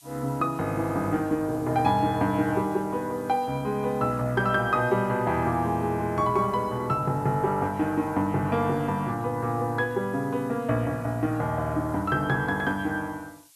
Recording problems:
background hiss; slope +4 dB per octave, SNR 26 dB

